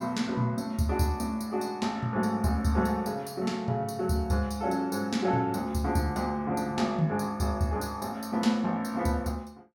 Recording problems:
none

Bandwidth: 17.5 kHz